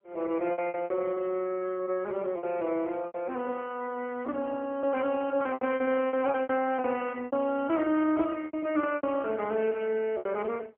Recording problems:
telephone audio; 240 Hz to 3.1 kHz, AMR-NB
lost packets; 13% of the sound replaced, filled with repeated pitch periods

